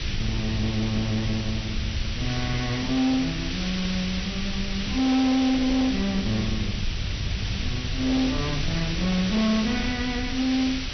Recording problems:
low-pass filter; nothing above 6 kHz
distorted audio; soft clipping, signal-to-distortion ratio 10 dB
hiss; SNR 6 dB
low-frequency rumble; below 86 Hz, SNR 16 dB
wind on the microphone; below 110 Hz, SNR 8 dB

